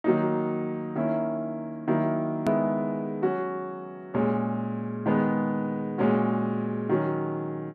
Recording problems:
hard cut with a click; at 2.5 s

